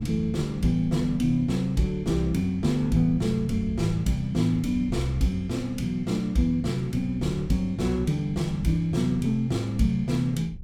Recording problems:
wind noise; below 120 Hz, SNR 16 dB

